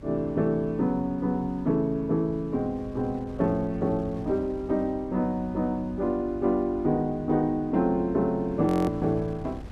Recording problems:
electrical hum; 50 Hz, harmonics up to 350 Hz, SNR 20 dB
wind on the microphone; below 210 Hz, SNR 19 dB
frozen audio; at 8.5 s

